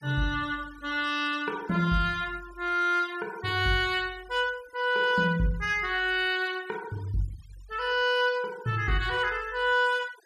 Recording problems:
noise reduction artefacts; signal-to-artefact ratio 23 dB

